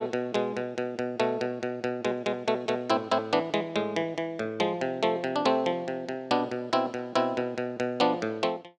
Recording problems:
none

